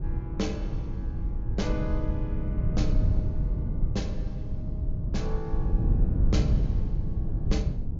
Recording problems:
treble cut off; nothing above 7.2 kHz
wind on the microphone; below 110 Hz, SNR -7 dB

